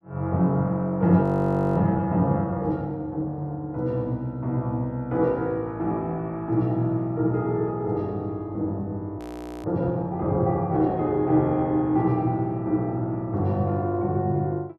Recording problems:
audio freezing; at 1 s for 0.5 s and at 9 s

